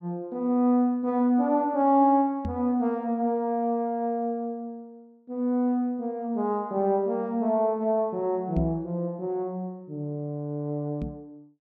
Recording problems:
microphone bump; at 2.5 s, at 8.5 s and at 11 s; peak -1 dB vs average level

